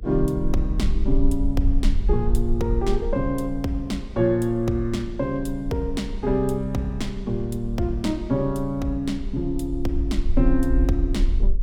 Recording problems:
electrical hum; 50 Hz, harmonics up to 500 Hz, SNR 23 dB
rumble; below 48 Hz, SNR 4 dB

